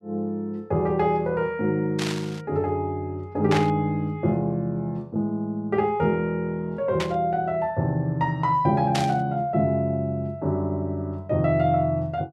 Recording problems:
burst of static; 4 times, first at 2 s; peak +1 dB vs average level

